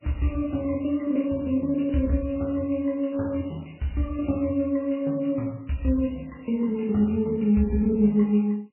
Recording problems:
lossy compression; MP3, log-spectral distance 3 dB, nothing above 2.7 kHz

